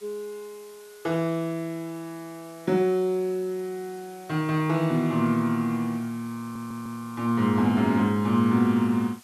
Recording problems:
hiss; slope +1 dB per octave, SNR 25 dB
audio stuttering; at 6.5 s

